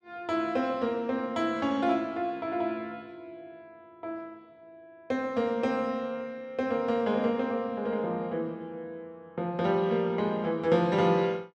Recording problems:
none

